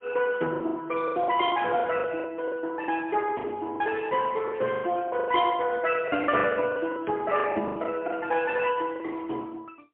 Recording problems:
phone line; 240 Hz to 3.3 kHz, AMR-NB, then MP3
packet loss; 14% of the sound replaced, filled with the last packet
crackling; from 4 to 5.5 s; loose cable, SNR 26 dB

